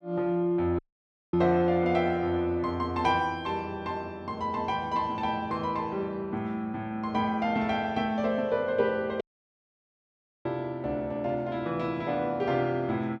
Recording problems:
audio cutting out; at 1 s for 0.5 s and at 9 s for 1 s

